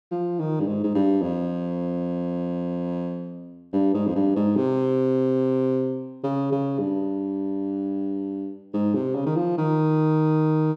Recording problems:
none

